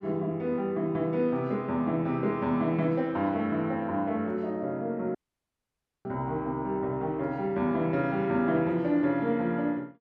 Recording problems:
dropout; at 5 s for 1 s

